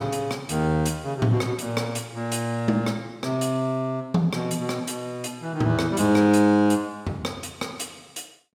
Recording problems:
none

